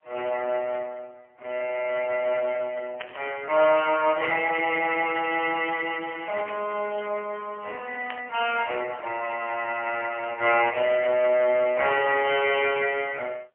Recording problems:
phone line; 340 Hz to 3.1 kHz, AMR-NB, then MP3
burst of static; 4 times, first at 3 s; peak -6 dB vs average level

